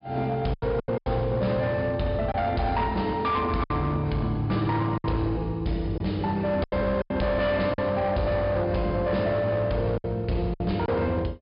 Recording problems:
treble missing; nothing above 5.1 kHz
distorted audio; hard clipping, signal-to-distortion ratio 11 dB
packet loss; 7% of the sound replaced, filled with silence

